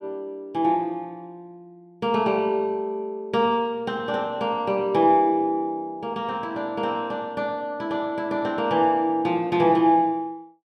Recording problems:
none

